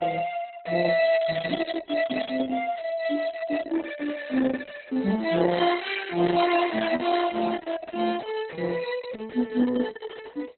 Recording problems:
lossy compression; Opus, log-spectral distance 5 dB, nothing above 4.1 kHz

